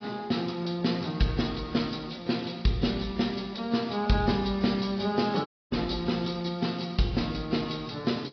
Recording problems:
treble missing; nothing above 5.3 kHz
codec artefacts; AAC, log-spectral distance 5 dB
audio cutting out; at 5.5 s

